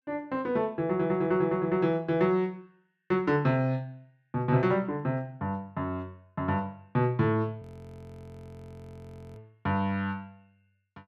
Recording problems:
frozen audio; at 7.5 s for 1.5 s

